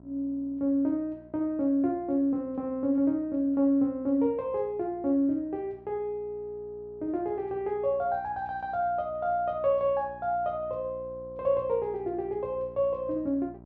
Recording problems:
hum; 60 Hz, harmonics up to 1.1 kHz, SNR 23 dB

